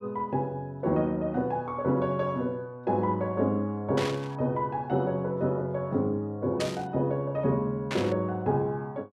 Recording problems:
static burst; at 4 s, at 6.5 s and at 8 s; peak -1 dB vs average level

